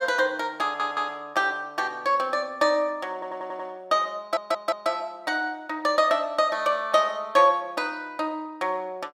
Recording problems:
stutter; at 0.5 s, at 3 s and at 4 s

